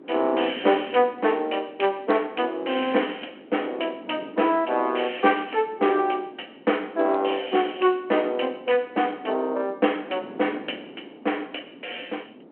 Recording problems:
phone line; 240 Hz to 3.3 kHz, G.726
wind on the microphone; below 480 Hz, SNR 19 dB

